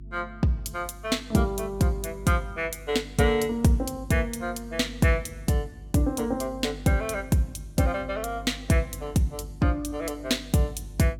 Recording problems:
electrical hum; 50 Hz, harmonics up to 350 Hz, SNR 17 dB

